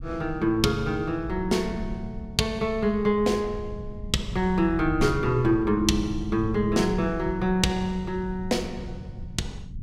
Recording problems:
low-frequency rumble; below 120 Hz, SNR 12 dB

